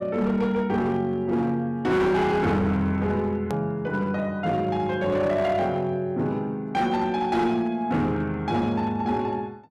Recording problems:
distortion; hard clipping, signal-to-distortion ratio 11 dB
edit click; at 3.5 s

